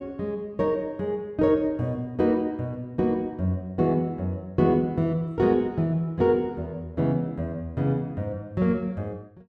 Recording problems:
none

